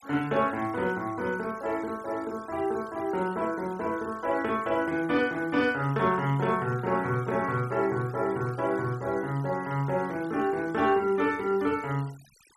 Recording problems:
denoising artefacts; signal-to-artefact ratio 22 dB

